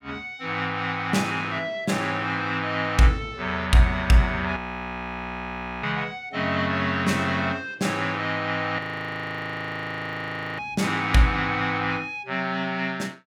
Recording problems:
audio freezing; at 4.5 s for 1.5 s and at 9 s for 2 s

